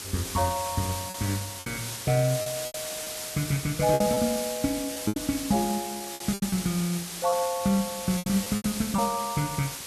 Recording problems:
background hiss; slope 0 dB per octave, SNR 6 dB
lost packets; 8% of the sound replaced, filled with repeated pitch periods

